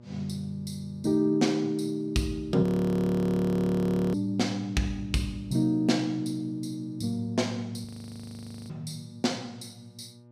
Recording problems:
hum; 60 Hz, harmonics up to 1.2 kHz, SNR 23 dB
audio freezing; at 2.5 s for 1.5 s and at 8 s for 1 s

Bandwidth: 15 kHz